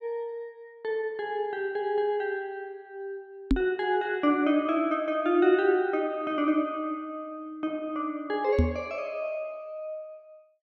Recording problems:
knock on the microphone; at 3.5 s and at 8.5 s; peak +8 dB vs average level

